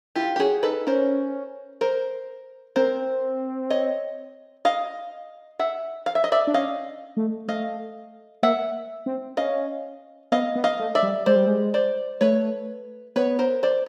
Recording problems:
none

